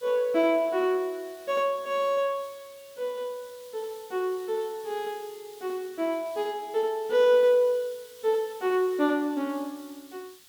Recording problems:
background hiss; SNR 23 dB

